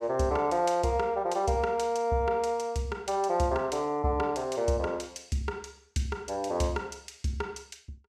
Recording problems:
none

